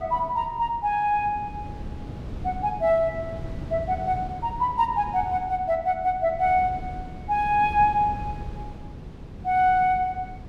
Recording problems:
wind on the microphone; below 230 Hz, SNR 14 dB

